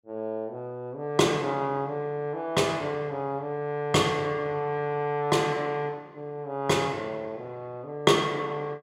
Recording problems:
none

